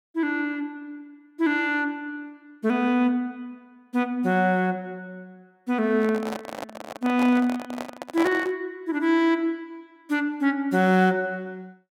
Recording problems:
microphone handling noise; from 6 to 8.5 s; peak -1 dB vs average level

